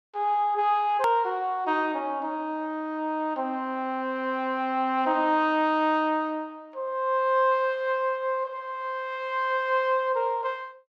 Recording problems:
hard cut with a click; at 1 s

